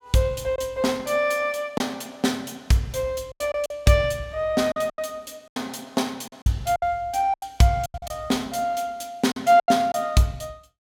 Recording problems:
lost packets; 8% of the sound replaced, filled with silence

